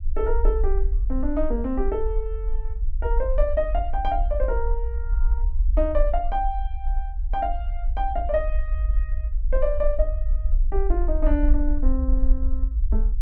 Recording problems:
rumble; below 48 Hz, SNR -2 dB

